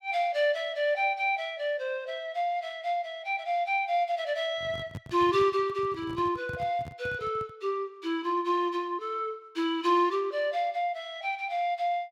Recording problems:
microphone handling noise; from 4.5 to 7.5 s; peak -6 dB vs average level

